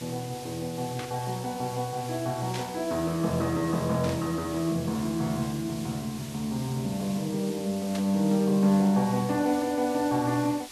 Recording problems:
background hiss; slope 0 dB per octave, SNR 14 dB
burst of static; 4 times, first at 1 s; peak -6 dB vs average level

